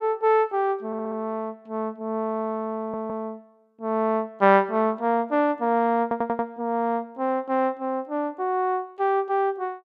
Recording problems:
audio stuttering; at 1 s, at 3 s and at 6 s

